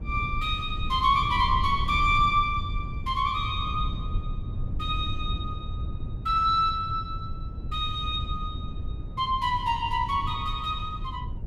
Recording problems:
rumble; below 110 Hz, SNR 8 dB

